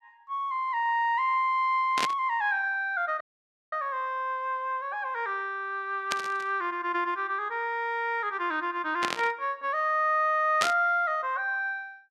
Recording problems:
static burst; 4 times, first at 2 s; peak +4 dB vs average level
dropout; at 3 s for 0.5 s

